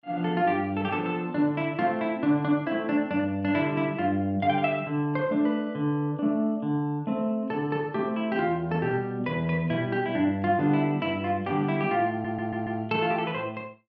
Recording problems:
stutter; at 12 s

